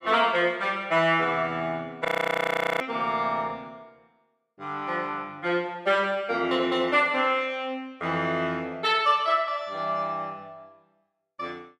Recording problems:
frozen audio; at 2 s for 1 s

